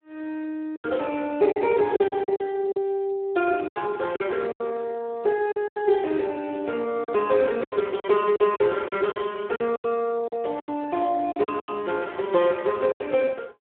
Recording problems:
phone line; 300 Hz to 3.1 kHz, Speex
lost packets; 11% of the sound replaced, filled with silence

